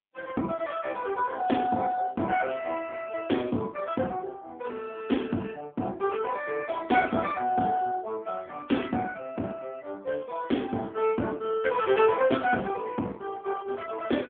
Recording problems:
telephone audio; 170 Hz to 3.4 kHz, AMR-NB

